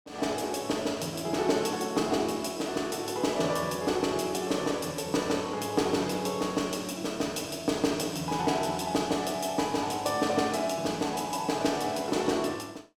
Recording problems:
none

